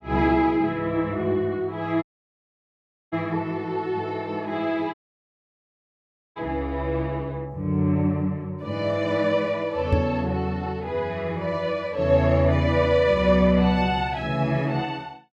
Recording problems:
audio cutting out; at 2 s for 1 s and at 5 s for 1.5 s
microphone thump; at 10 s; peak +5 dB vs average level

